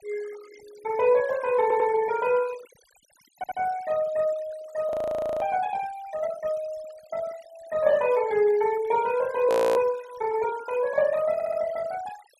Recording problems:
noise reduction artefacts; signal-to-artefact ratio 21 dB
audio stuttering; at 1.5 s, at 3.5 s and at 11 s
frozen audio; at 5 s for 0.5 s and at 9.5 s

